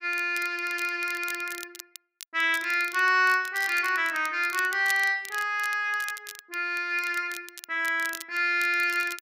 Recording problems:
crackle; vinyl, SNR 16 dB

